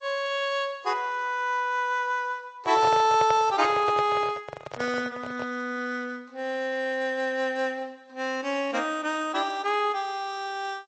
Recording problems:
codec artefacts; MP3, then G.722, log-spectral distance 2 dB, nothing above 8 kHz
microphone handling noise; from 2.5 to 5.5 s; peak -2 dB vs average level

